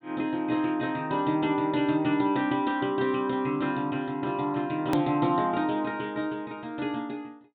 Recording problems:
treble missing; nothing above 4 kHz
edit click; at 5 s

